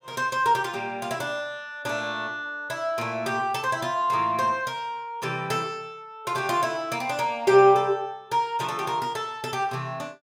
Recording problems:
none

